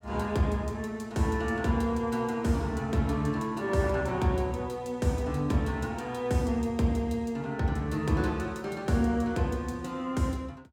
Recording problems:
none

